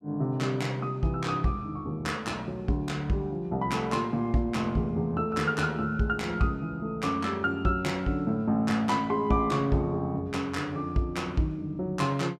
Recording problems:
none

